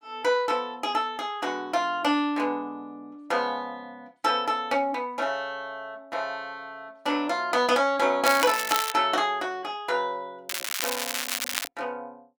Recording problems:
crackling; at 8.5 s and from 10 to 12 s; loose cable, SNR 3 dB

